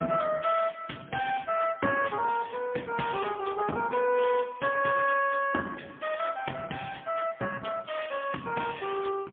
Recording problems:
telephone audio; 220 Hz to 2.8 kHz, AMR-NB, then MP3

